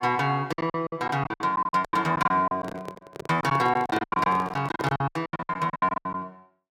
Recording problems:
packet loss; 22% of the sound replaced, filled with silence
microphone handling noise; from 2.5 to 5 s; peak -2 dB vs average level

